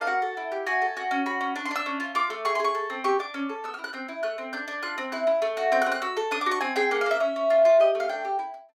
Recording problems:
none

